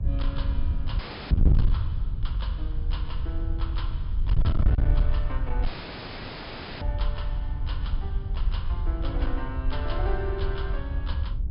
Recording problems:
treble cut off; nothing above 5.5 kHz
distorted audio; hard clipping, uneven, signal-to-distortion ratio 8 dB
rumble; below 80 Hz, SNR 0 dB
wind noise; below 76 Hz, SNR -10 dB
dropout; at 1 s and at 5.5 s for 1 s

